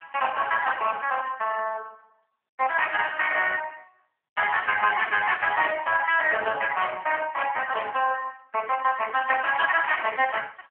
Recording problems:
phone line; 410 Hz to 3.3 kHz, AMR-NB

